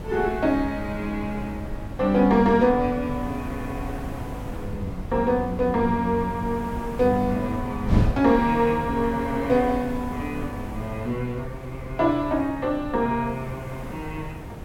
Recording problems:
background hiss; SNR 17 dB
wind on the microphone; below 190 Hz, SNR 10 dB

